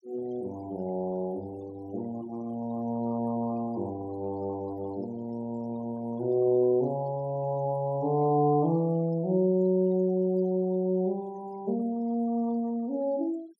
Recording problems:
noise reduction artefacts; signal-to-artefact ratio 25 dB

